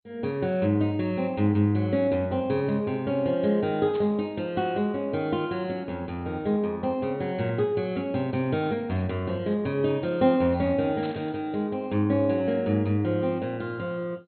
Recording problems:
lossy codec; MP2, log-spectral distance 2 dB, nothing above 4.2 kHz
static burst; at 4 s and at 11 s; peak -12 dB vs average level

